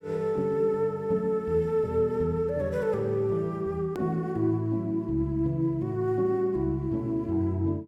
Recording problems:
click at an edit; at 4 s

